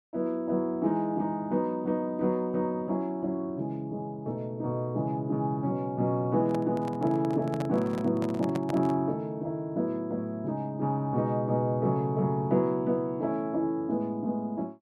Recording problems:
handling noise; from 6.5 to 9 s; peak -2 dB vs average level

